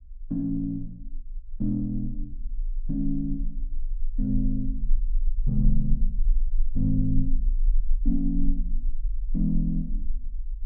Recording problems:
low-frequency rumble; below 34 Hz, strongest tone 20 Hz, SNR 2 dB

